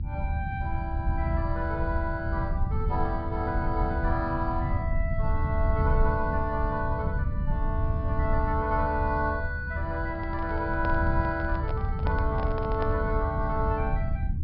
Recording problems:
treble missing; nothing above 5.3 kHz
low-frequency rumble; below 98 Hz, SNR 0 dB
handling noise; from 10 to 13 s; peak -2 dB vs average level

